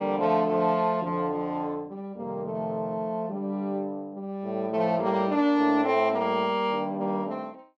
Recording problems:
none

